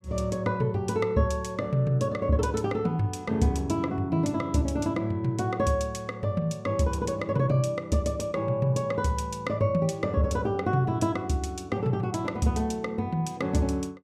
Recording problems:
none

